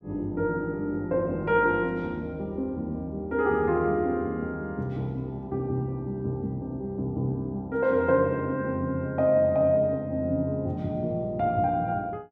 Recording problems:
none

